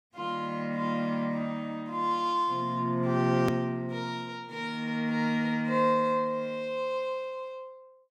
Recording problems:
click at an edit; at 3.5 s

